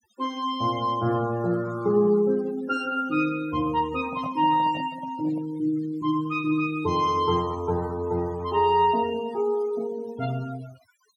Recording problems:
denoising artefacts; signal-to-artefact ratio 20 dB
microphone handling noise; from 4 to 5.5 s; peak -9 dB vs average level

